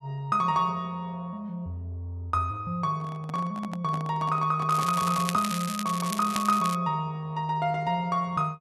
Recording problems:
handling noise; from 3 to 5 s; peak -7 dB vs average level
crackling; from 4.5 to 7 s; loose cable, SNR 8 dB

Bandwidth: 12.5 kHz